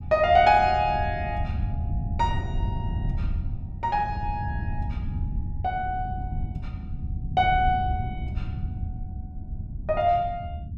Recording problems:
rumble; below 120 Hz, SNR 7 dB

